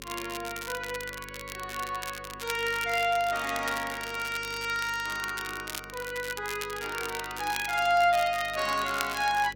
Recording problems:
electrical hum; 50 Hz, harmonics up to 550 Hz, SNR 21 dB
crackling; vinyl, SNR 10 dB

